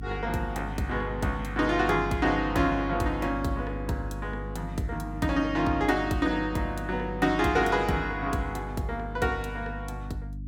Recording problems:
electrical hum; 50 Hz, harmonics up to 300 Hz, SNR 9 dB

